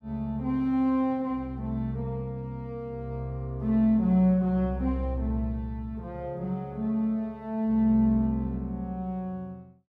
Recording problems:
none

